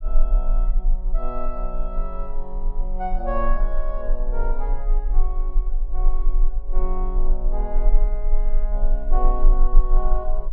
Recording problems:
low-pass filter; nothing above 5.5 kHz
low-frequency rumble; below 30 Hz, strongest tone 20 Hz, SNR -8 dB

